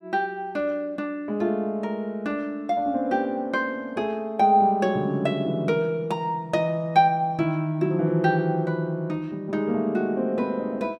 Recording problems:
none

